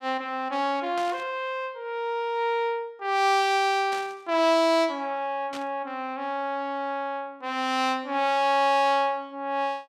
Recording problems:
static burst; at 1 s, at 4 s and at 5.5 s; peak -9 dB vs average level

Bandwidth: 15.5 kHz